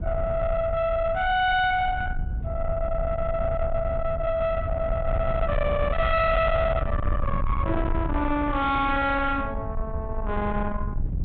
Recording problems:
treble missing; nothing above 4 kHz
distorted audio; soft clipping, signal-to-distortion ratio 8 dB
rumble; below 180 Hz, SNR 5 dB

